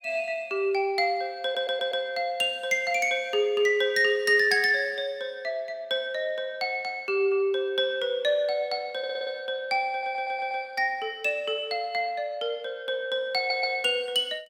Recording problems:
stutter; 4 times, first at 1.5 s

